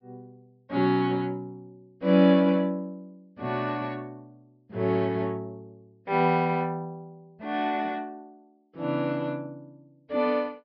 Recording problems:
treble cut off; nothing above 5.5 kHz

